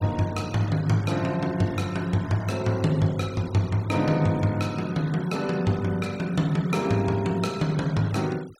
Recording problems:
denoising artefacts; signal-to-artefact ratio 21 dB

